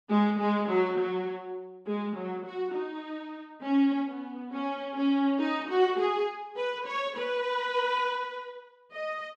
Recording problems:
none

